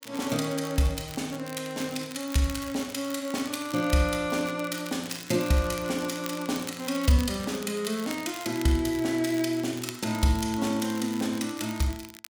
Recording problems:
crackling; vinyl, SNR 15 dB

